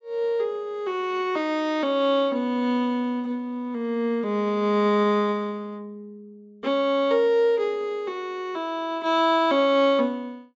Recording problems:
low-pass filter; nothing above 8 kHz

